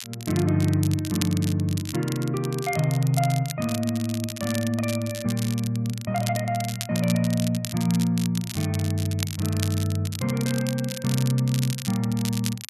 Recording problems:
crackle; vinyl, SNR 10 dB

